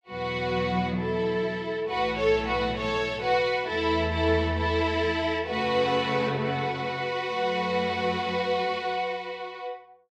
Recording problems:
none

